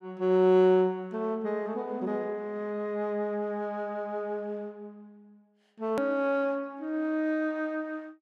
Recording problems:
edit click; at 6 s

